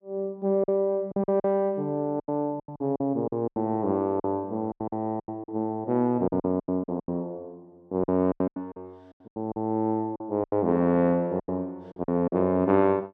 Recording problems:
lost packets; 14% of the sound replaced, filled with silence

